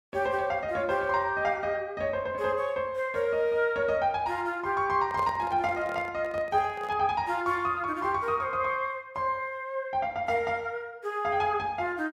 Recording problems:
microphone handling noise; from 5 to 7 s; peak -6 dB vs average level

